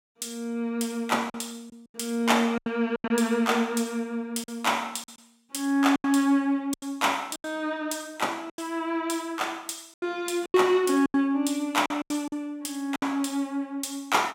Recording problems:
packet loss; 8% of the sound replaced, filled with silence

